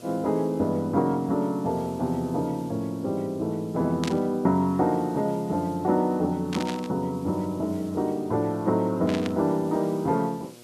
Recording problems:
mains hum; 60 Hz, harmonics up to 1.3 kHz, SNR 24 dB
hiss; slope -1 dB per octave, SNR 26 dB
burst of static; at 4 s, at 6.5 s and at 9 s; peak -3 dB vs average level

